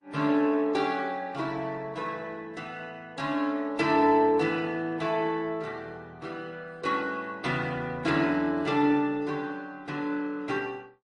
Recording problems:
lossy codec; Opus, then MP3, log-spectral distance 2 dB, nothing above 10.4 kHz

